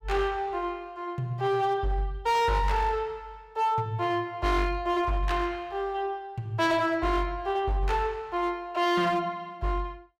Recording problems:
distorted audio; hard clipping, signal-to-distortion ratio 12 dB

